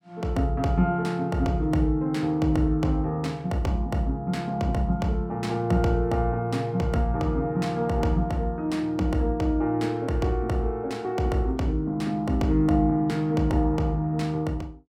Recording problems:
none

